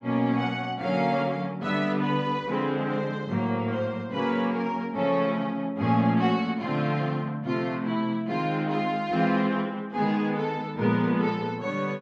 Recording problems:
none

